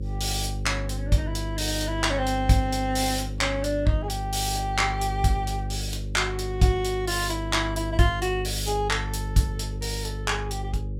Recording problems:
hum; 50 Hz, harmonics up to 550 Hz, SNR 6 dB

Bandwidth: 16 kHz